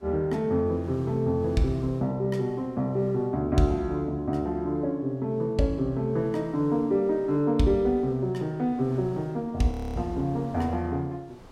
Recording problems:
wind noise; below 790 Hz, SNR 24 dB
frozen audio; at 9.5 s

